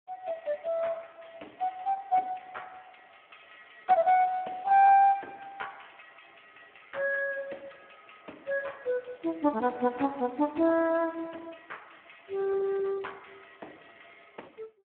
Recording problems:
telephone audio; 220 Hz to 3.2 kHz, Speex

